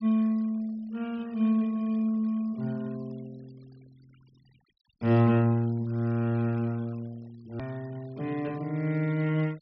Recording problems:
treble cut off; nothing above 5.5 kHz
denoising artefacts; signal-to-artefact ratio 28 dB
edit click; at 7.5 s

